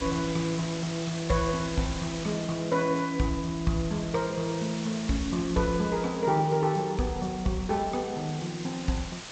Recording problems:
lossy codec; G.722, log-spectral distance 10 dB
hiss; slope -1 dB per octave, SNR 11 dB

